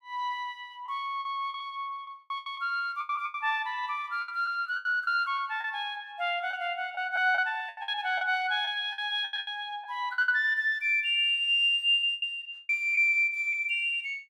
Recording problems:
lost packets; 11% of the sound replaced, filled with the last packet

